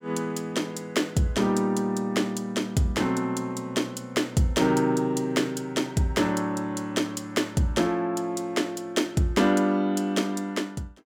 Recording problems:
none

